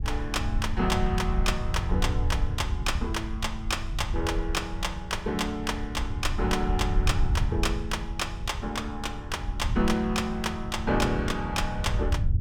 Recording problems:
low-frequency rumble; below 82 Hz, SNR 3 dB

